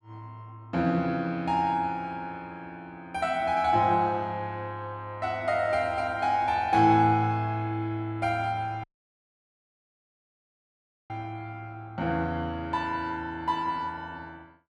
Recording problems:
dropout; at 9 s for 2.5 s

